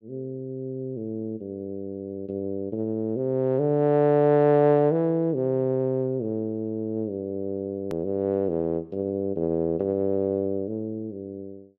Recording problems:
edit click; at 8 s

